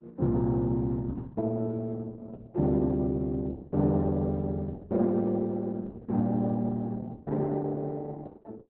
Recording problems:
lossy compression; Opus, log-spectral distance 2 dB, nothing above 3.9 kHz

